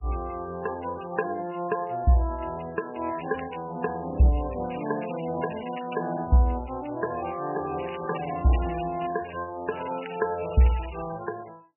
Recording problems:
lossy codec; MP3, log-spectral distance 11 dB, nothing above 2.8 kHz
crackle; 4 times, first at 3 s; loose cable, SNR 17 dB

